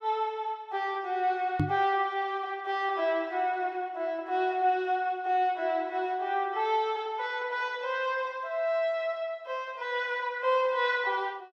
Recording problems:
knock on the microphone; at 1.5 s; peak +5 dB vs average level

